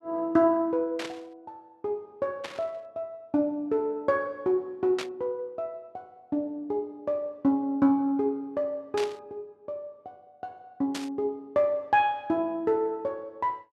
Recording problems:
burst of static; 5 times, first at 1 s; peak -2 dB vs average level

